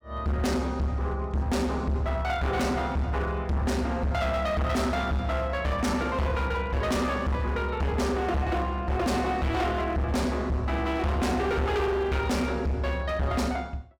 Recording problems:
distortion; hard clipping, signal-to-distortion ratio 7 dB

